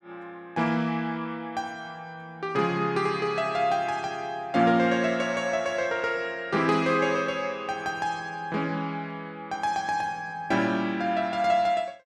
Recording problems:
none

